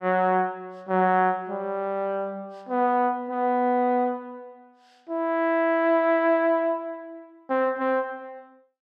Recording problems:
none

